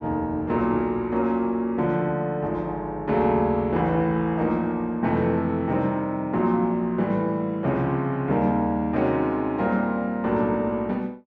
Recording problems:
none

